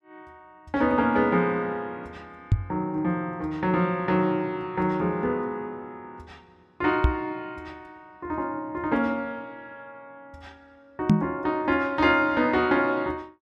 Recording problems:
microphone bump; at 2.5 s, at 7 s and at 11 s; peak +10 dB vs average level

